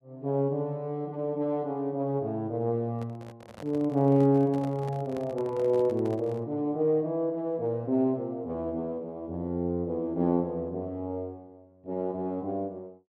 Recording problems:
microphone handling noise; from 3 to 6.5 s; peak -9 dB vs average level

